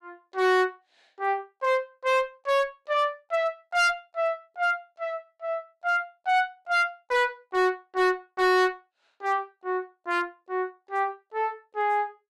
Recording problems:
distortion; hard clipping, signal-to-distortion ratio 11 dB

